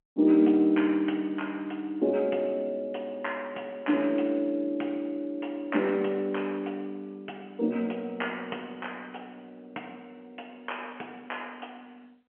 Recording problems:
phone line; 220 Hz to 3.2 kHz, G.711

